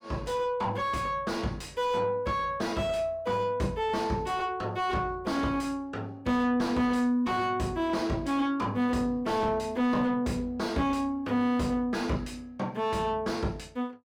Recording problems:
distortion; soft clipping, signal-to-distortion ratio 7 dB

